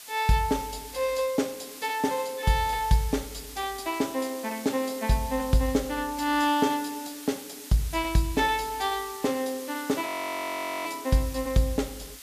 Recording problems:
hiss; slope +2 dB per octave, SNR 13 dB
audio freezing; at 10 s for 1 s

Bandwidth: 14.5 kHz